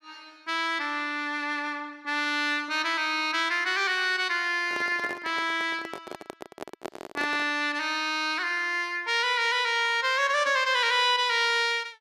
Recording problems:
microphone handling noise; from 4.5 to 7.5 s; peak -6 dB vs average level

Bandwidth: 13.5 kHz